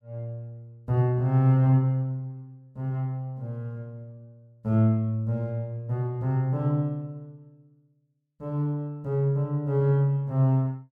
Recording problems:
none

